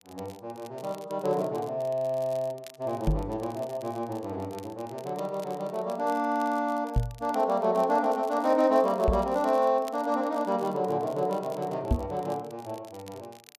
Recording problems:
crackle; vinyl, SNR 24 dB
microphone bump; 4 times, first at 3 s; peak +6 dB vs average level

